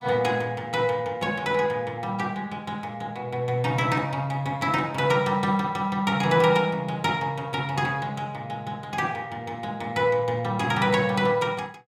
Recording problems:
none

